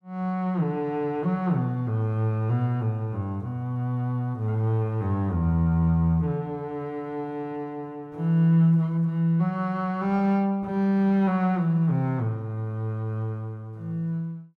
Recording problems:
none

